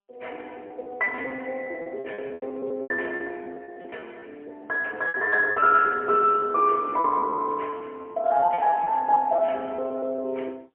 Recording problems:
telephone audio; 320 Hz to 3.3 kHz, AMR-NB, then MP3
packet loss; 15% of the sound replaced, filled with repeated pitch periods

